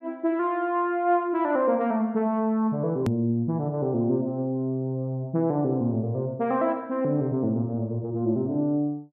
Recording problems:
click at an edit; at 3 s

